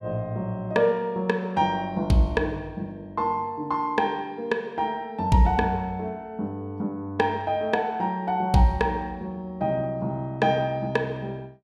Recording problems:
none

